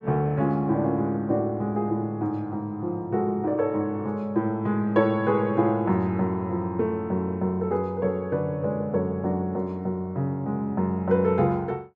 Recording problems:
none

